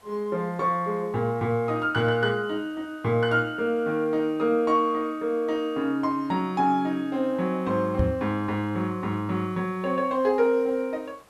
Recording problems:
background hiss; SNR 30 dB
microphone thump; at 8 s; peak +4 dB vs average level

